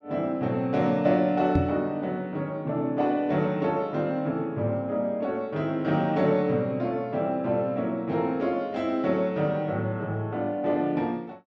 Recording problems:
microphone thump; at 1.5 s; peak +5 dB vs average level

